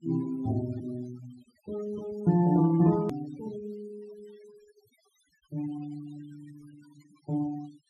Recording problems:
noise reduction artefacts; signal-to-artefact ratio 22 dB
edit click; at 3 s

